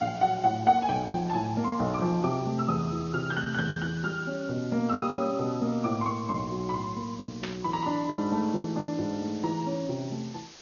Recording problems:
codec artefacts; MP2, then Vorbis, log-spectral distance 8 dB, nothing above 6.5 kHz
background hiss; SNR 20 dB
lost packets; 6% of the sound replaced, filled with the last packet
burst of static; at 7.5 s; peak -3 dB vs average level

